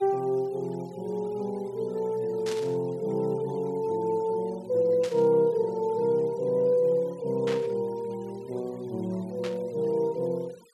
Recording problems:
denoising artefacts; signal-to-artefact ratio 28 dB
static burst; 4 times, first at 2.5 s; peak -6 dB vs average level

